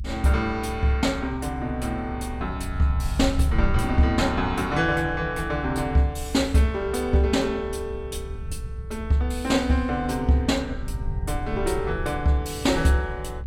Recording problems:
rumble; below 78 Hz, SNR 9 dB

